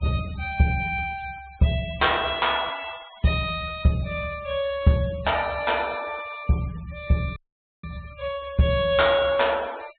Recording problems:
low-pass filter; nothing above 4 kHz
denoising artefacts; signal-to-artefact ratio 22 dB
dropout; at 7.5 s

